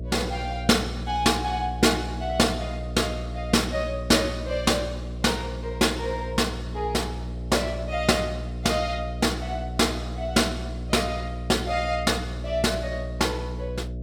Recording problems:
electrical hum; 60 Hz, harmonics up to 660 Hz, SNR 8 dB

